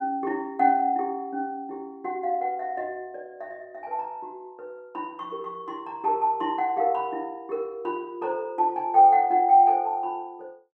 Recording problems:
none

